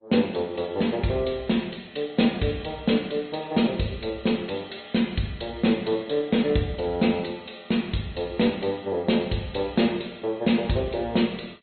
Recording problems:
treble missing; nothing above 4.2 kHz
codec artefacts; Opus, log-spectral distance 4 dB

